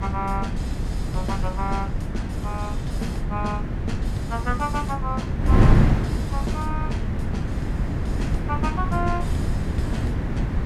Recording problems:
rumble; below 68 Hz, SNR 7 dB
wind on the microphone; below 190 Hz, SNR -6 dB

